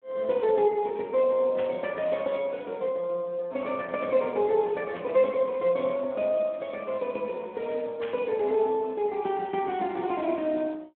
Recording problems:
telephone audio; 220 Hz to 3.9 kHz, Speex
static burst; at 1.5 s, at 5 s and at 8 s; peak -8 dB vs average level

